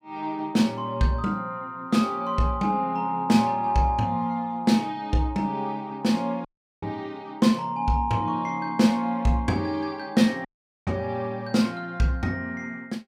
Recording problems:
audio cutting out; at 6.5 s and at 10 s

